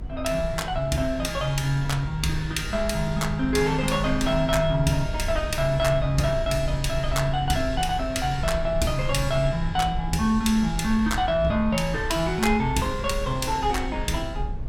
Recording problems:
rumble; below 88 Hz, SNR 9 dB

